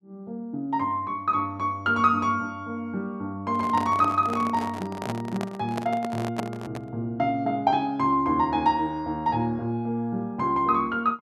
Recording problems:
microphone handling noise; from 3.5 to 7 s; peak -1 dB vs average level

